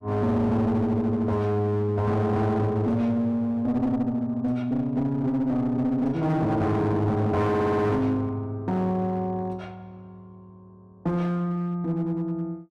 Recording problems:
distortion; hard clipping, uneven, signal-to-distortion ratio 9 dB
stutter; at 7.5 s

